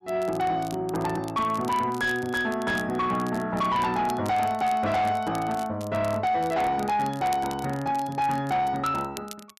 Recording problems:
distortion; soft clipping, signal-to-distortion ratio 11 dB
crackling; vinyl, SNR 20 dB

